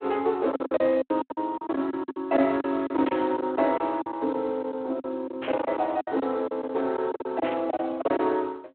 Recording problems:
telephone audio; 220 Hz to 4 kHz, Speex
packet loss; 15% of the sound replaced, filled with silence
burst of static; at 3 s, at 5.5 s and at 7.5 s; peak -6 dB vs average level

